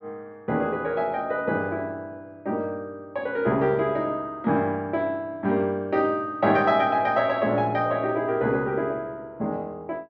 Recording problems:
none

